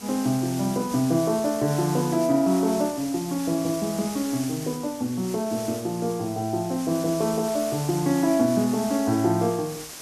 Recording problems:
background hiss; SNR 12 dB

